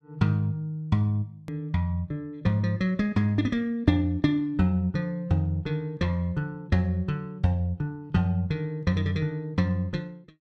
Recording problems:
edit click; at 1.5 s

